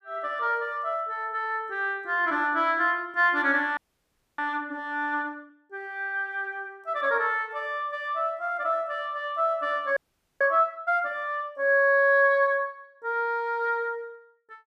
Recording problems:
frozen audio; at 4 s for 0.5 s and at 10 s

